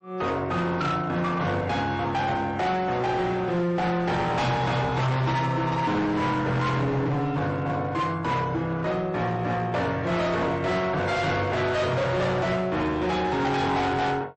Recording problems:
lossy codec; MP3, log-spectral distance 2 dB, nothing above 8.2 kHz
distorted audio; hard clipping, signal-to-distortion ratio 8 dB

